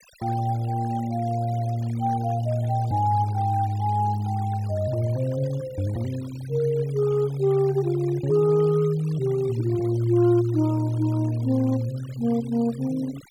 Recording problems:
denoising artefacts; signal-to-artefact ratio 22 dB

